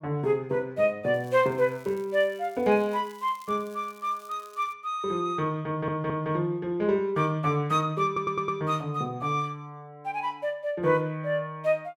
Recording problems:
crackle; from 1 to 4.5 s; loose cable, SNR 27 dB
stutter; at 5.5 s and at 8 s

